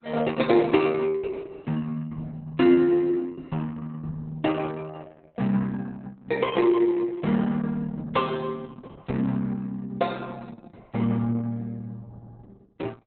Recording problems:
lossy codec; Opus, log-spectral distance 3 dB, nothing above 3.9 kHz

